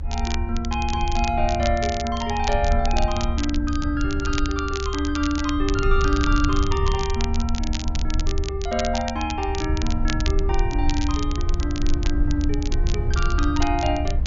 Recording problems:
treble missing; nothing above 7.1 kHz
low-frequency rumble; below 72 Hz, SNR 0 dB
crackling; vinyl, SNR 9 dB

